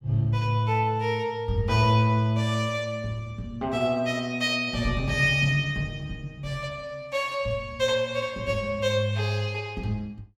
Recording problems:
none

